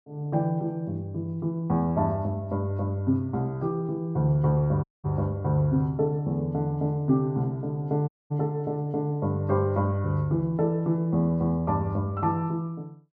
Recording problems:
dropout; at 5 s and at 8 s

